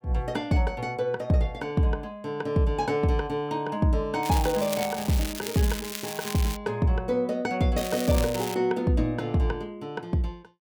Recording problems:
crackling; from 4 to 6.5 s and at 8 s; loose cable, SNR 9 dB

